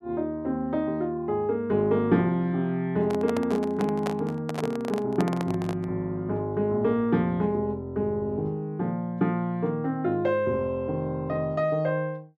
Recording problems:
handling noise; from 3 to 6 s; peak -1 dB vs average level

